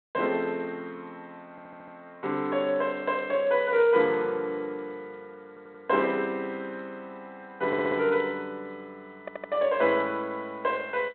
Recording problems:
telephone audio; 240 Hz to 4 kHz, G.726
audio stuttering; 4 times, first at 1.5 s

